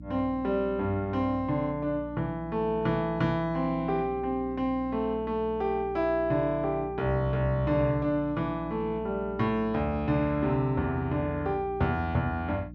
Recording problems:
hum; 60 Hz, harmonics up to 300 Hz, SNR 15 dB

